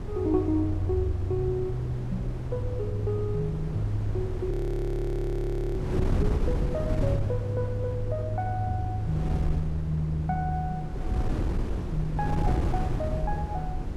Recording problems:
wind noise; below 160 Hz, SNR 2 dB
audio freezing; at 4.5 s for 1 s

